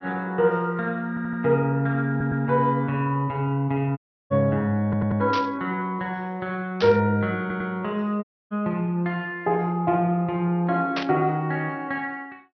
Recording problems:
treble missing; nothing above 5.8 kHz
stutter; 4 times, first at 1 s
audio cutting out; at 4 s and at 8 s
burst of static; at 5.5 s, at 7 s and at 11 s; peak 0 dB vs average level

